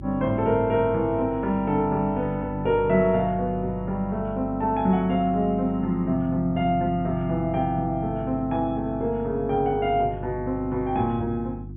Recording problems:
treble cut off; nothing above 3.4 kHz
electrical hum; 50 Hz, harmonics up to 350 Hz, SNR 12 dB

